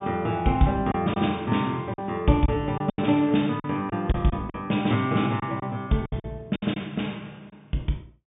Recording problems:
treble cut off; nothing above 3.6 kHz
packet loss; 7% of the sound replaced, filled with silence

